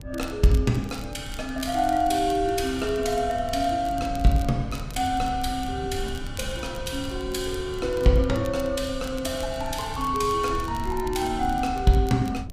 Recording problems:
rumble; below 110 Hz, SNR 12 dB
crackle; vinyl, SNR 21 dB

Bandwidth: 15 kHz